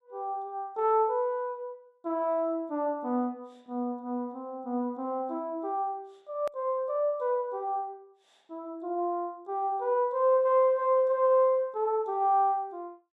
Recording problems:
edit click; at 6.5 s

